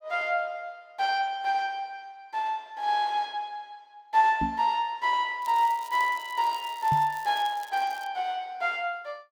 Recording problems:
microphone bump; at 4.5 s and at 7 s; peak 0 dB vs average level
crackle; from 5.5 to 8 s; loose cable, SNR 21 dB

